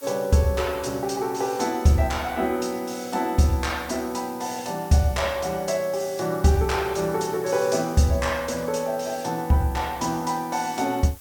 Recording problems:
background hiss; slope 0 dB per octave, SNR 20 dB

